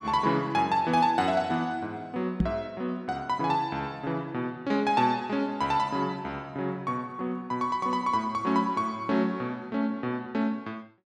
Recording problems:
microphone thump; at 2.5 s; peak +7 dB vs average level

